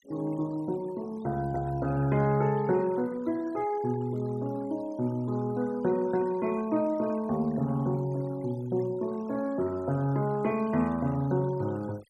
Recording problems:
noise reduction artefacts; signal-to-artefact ratio 22 dB

